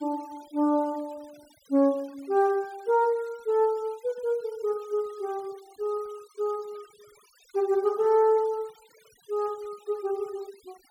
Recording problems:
noise reduction artefacts; signal-to-artefact ratio 27 dB

